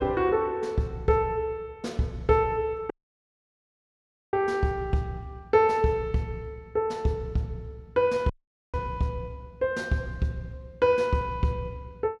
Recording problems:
dropout; at 3 s for 1.5 s and at 8.5 s

